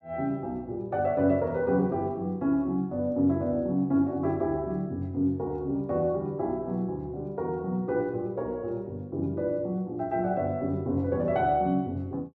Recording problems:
none

